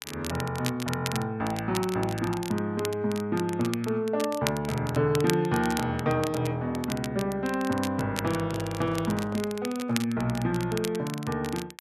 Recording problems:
crackling; vinyl, SNR 11 dB
handling noise; from 8.5 to 10 s; peak -11 dB vs average level

